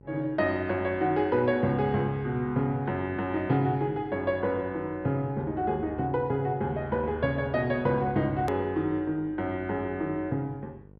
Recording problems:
low-pass filter; nothing above 5.5 kHz
hum; 50 Hz, harmonics up to 950 Hz, SNR 22 dB
edit click; at 8.5 s

